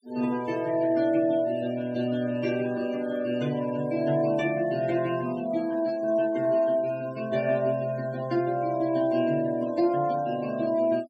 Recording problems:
noise reduction artefacts; signal-to-artefact ratio 21 dB

